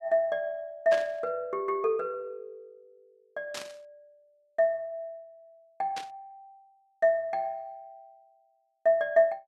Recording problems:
static burst; at 1 s, at 3.5 s and at 6 s; peak -5 dB vs average level

